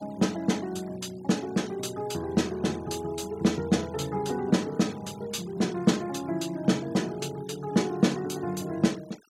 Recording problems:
denoising artefacts; signal-to-artefact ratio 22 dB

